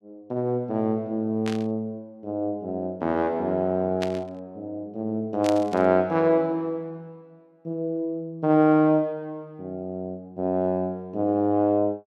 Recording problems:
burst of static; at 1.5 s, at 4 s and at 5.5 s; peak -4 dB vs average level

